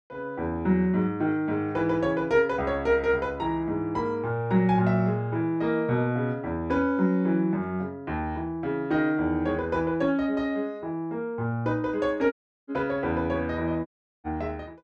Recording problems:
dropout; at 12 s and at 14 s

